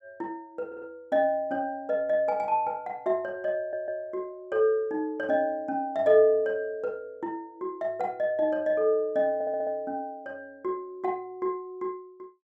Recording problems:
audio stuttering; at 0.5 s, at 3.5 s and at 9.5 s

